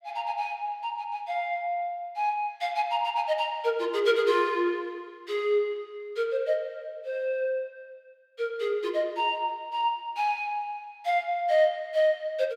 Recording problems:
none

